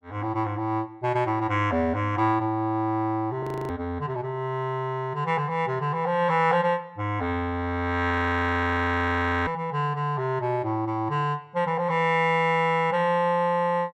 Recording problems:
frozen audio; at 3.5 s and at 8 s for 1.5 s

